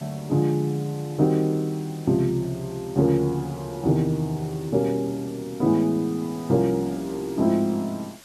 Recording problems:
background hiss; slope 0 dB per octave, SNR 22 dB

